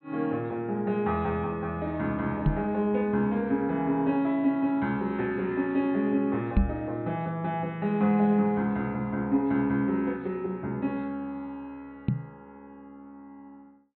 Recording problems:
treble missing; nothing above 4.2 kHz
knock on the microphone; at 2.5 s, at 6.5 s and at 12 s; peak +8 dB vs average level

